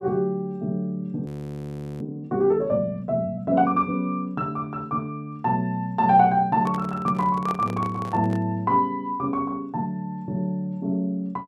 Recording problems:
audio freezing; at 1.5 s for 0.5 s
microphone handling noise; from 6.5 to 8.5 s; peak -5 dB vs average level

